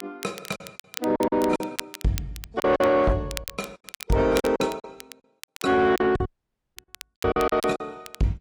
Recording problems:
lossy compression; AAC, log-spectral distance 2 dB
distortion; soft clipping, signal-to-distortion ratio 11 dB
crackle; vinyl, SNR 15 dB
lost packets; 13% of the sound replaced, filled with silence
audio cutting out; at 6.5 s for 0.5 s

